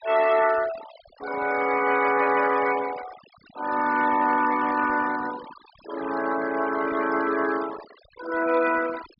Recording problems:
treble cut off; nothing above 5.5 kHz
denoising artefacts; signal-to-artefact ratio 14 dB

